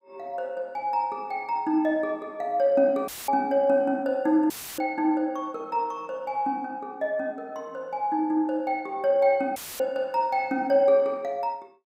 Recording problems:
audio cutting out; at 3 s, at 4.5 s and at 9.5 s; filled with static

